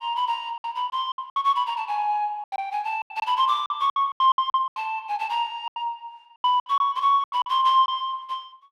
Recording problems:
lost packets; 14% of the sound replaced, filled with silence

